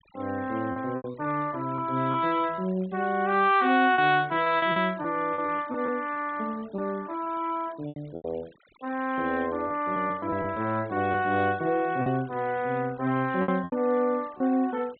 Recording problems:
treble cut off; nothing above 4 kHz
noise reduction artefacts; signal-to-artefact ratio 24 dB
packet loss; 7% of the sound replaced, filled with repeated pitch periods

